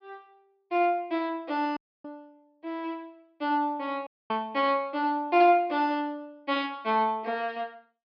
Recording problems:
treble cut off; nothing above 5.5 kHz
dropout; at 2 s and at 4 s

